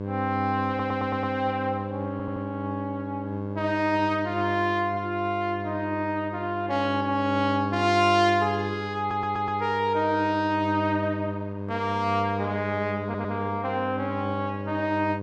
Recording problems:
electrical hum; 50 Hz, harmonics up to 1.1 kHz, SNR 7 dB
audio stuttering; 4 times, first at 0.5 s

